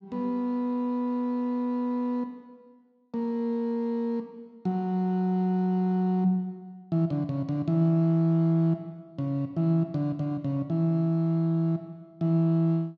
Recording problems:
none

